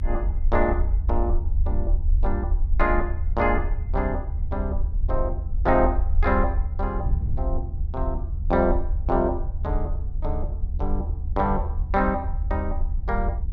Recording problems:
rumble; below 74 Hz, SNR 1 dB
wind noise; below 76 Hz, SNR 5 dB

